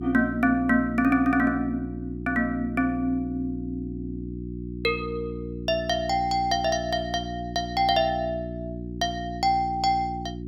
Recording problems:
hum; 60 Hz, harmonics up to 360 Hz, SNR 9 dB

